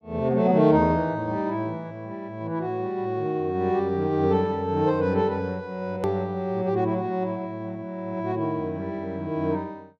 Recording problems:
edit click; at 6 s

